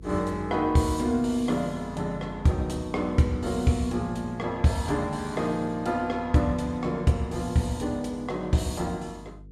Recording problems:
electrical hum; 50 Hz, harmonics up to 450 Hz, SNR 20 dB

